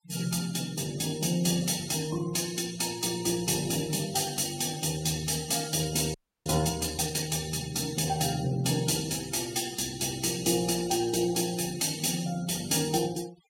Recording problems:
noise reduction artefacts; signal-to-artefact ratio 18 dB
frozen audio; at 6 s

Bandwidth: 16.5 kHz